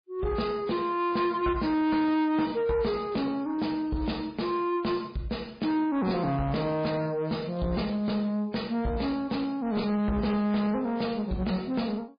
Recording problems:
codec artefacts; MP3, log-spectral distance 3 dB
distorted audio; soft clipping, signal-to-distortion ratio 11 dB

